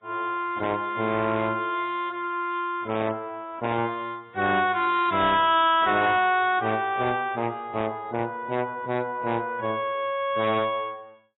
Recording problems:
lossy codec; AAC, log-spectral distance 2 dB, nothing above 3.4 kHz
distortion; hard clipping, signal-to-distortion ratio 11 dB

